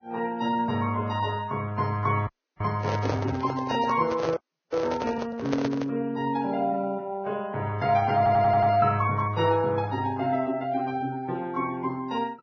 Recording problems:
codec artefacts; Vorbis, log-spectral distance 2 dB, nothing above 5.3 kHz
frozen audio; at 2.5 s and at 4.5 s
handling noise; from 3 to 6 s; peak +1 dB vs average level
stutter; at 8 s

